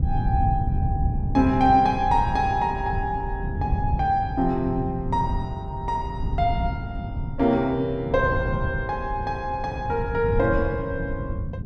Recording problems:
rumble; below 140 Hz, SNR 5 dB

